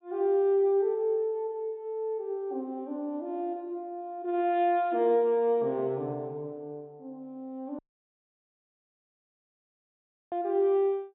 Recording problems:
low-pass filter; nothing above 3.8 kHz
dropout; at 8 s for 2.5 s

